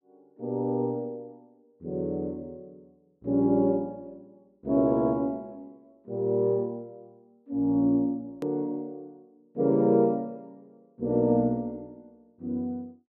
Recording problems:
hard cut with a click; at 8.5 s

